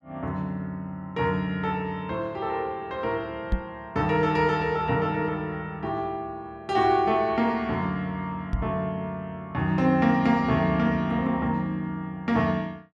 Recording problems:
knock on the microphone; at 3.5 s and at 8.5 s; peak +3 dB vs average level

